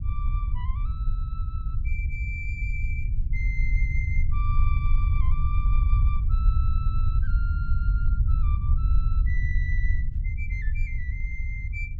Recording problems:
low-frequency rumble; below 72 Hz, SNR -12 dB

